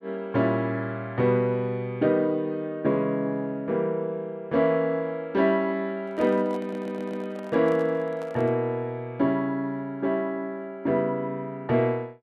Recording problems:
microphone handling noise; from 6 to 8.5 s; peak -11 dB vs average level
audio stuttering; at 6.5 s

